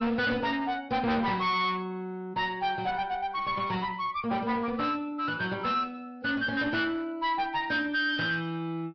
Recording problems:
treble missing; nothing above 5 kHz
lossy codec; MP3, log-spectral distance 2 dB
distortion; hard clipping, uneven, signal-to-distortion ratio 6 dB

